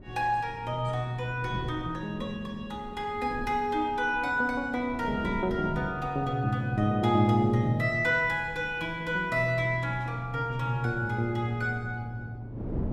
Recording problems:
wind on the microphone; below 290 Hz, SNR 15 dB

